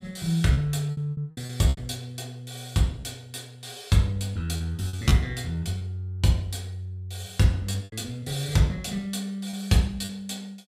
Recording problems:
lost packets; 7% of the sound replaced, filled with repeated pitch periods

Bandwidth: 15.5 kHz